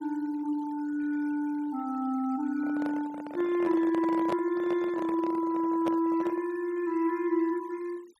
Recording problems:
noise reduction artefacts; signal-to-artefact ratio 23 dB
handling noise; from 2.5 to 6.5 s; peak -2 dB vs average level

